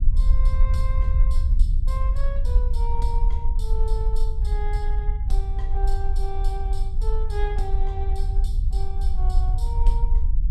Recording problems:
rumble; below 52 Hz, SNR -12 dB

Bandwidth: 14.5 kHz